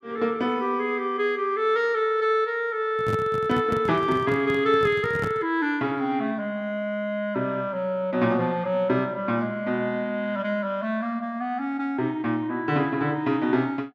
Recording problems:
microphone handling noise; from 3 to 5.5 s; peak -1 dB vs average level

